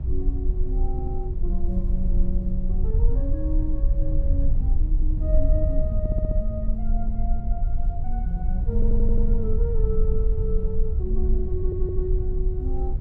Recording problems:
rumble; below 54 Hz, strongest tone 22 Hz, SNR -8 dB
stutter; 4 times, first at 1 s

